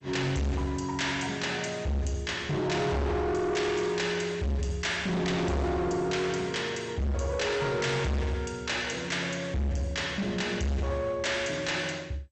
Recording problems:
lossy compression; MP2, log-spectral distance 3 dB, nothing above 8 kHz
distortion; hard clipping, signal-to-distortion ratio 7 dB

